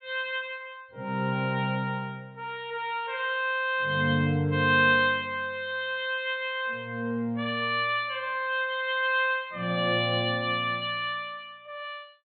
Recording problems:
low-pass filter; nothing above 4.3 kHz

